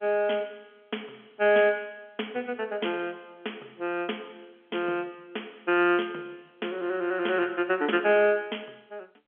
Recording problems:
phone line; 240 Hz to 3.3 kHz, G.711

